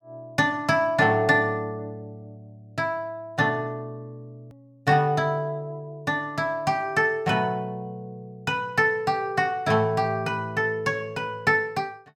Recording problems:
hard cut with a click; at 4.5 s

